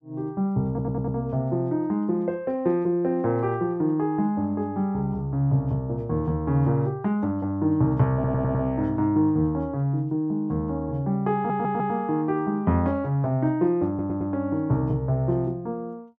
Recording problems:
stutter; 4 times, first at 0.5 s

